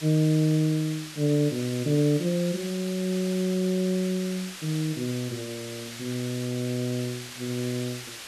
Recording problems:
background hiss; slope +1 dB per octave, SNR 11 dB

